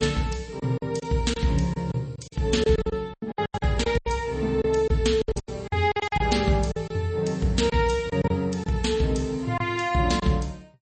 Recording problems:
lossy compression; MP3, log-spectral distance 3 dB, nothing above 8.2 kHz
lost packets; 12% of the sound replaced, filled with silence

